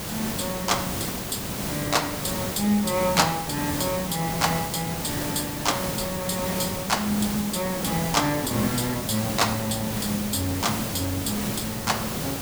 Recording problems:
background hiss; slope -4 dB per octave, SNR 3 dB

